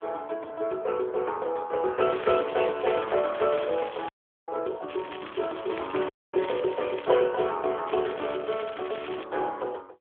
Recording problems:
telephone audio; 320 Hz to 3.4 kHz, AMR-NB
crackle; from 2 to 4 s, from 5 to 7 s and from 8 to 9 s; loose cable, SNR 15 dB
audio cutting out; at 4 s and at 6 s

